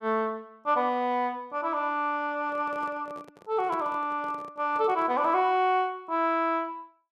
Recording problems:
handling noise; from 2.5 to 5.5 s; peak -10 dB vs average level

